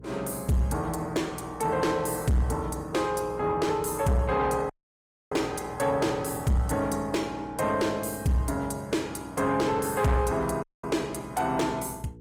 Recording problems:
lossy codec; Opus, log-spectral distance 4 dB
distortion; soft clipping, signal-to-distortion ratio 12 dB
electrical hum; 60 Hz, harmonics up to 480 Hz, SNR 20 dB
dropout; at 4.5 s for 0.5 s and at 11 s

